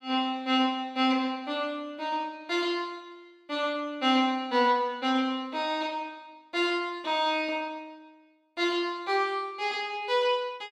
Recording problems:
none

